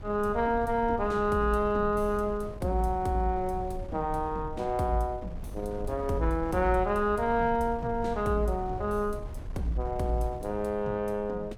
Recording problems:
wind on the microphone; below 100 Hz, SNR 12 dB

